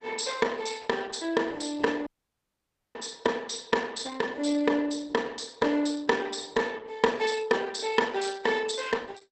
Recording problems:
lossy codec; Opus, log-spectral distance 7 dB, nothing above 8.2 kHz
dropout; at 2 s for 1 s

